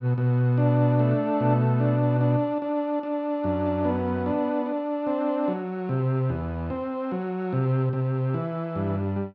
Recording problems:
none

